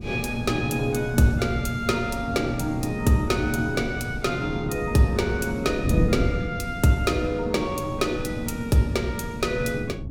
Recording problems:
wind on the microphone; below 220 Hz, SNR 7 dB

